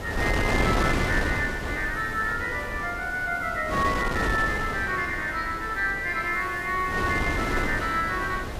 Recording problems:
background hiss; slope +5 dB per octave, SNR 25 dB
wind noise; below 920 Hz, SNR 4 dB

